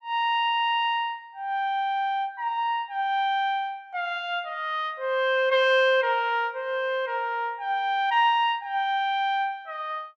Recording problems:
none

